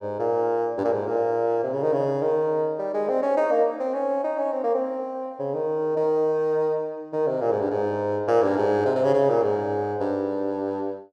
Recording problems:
none

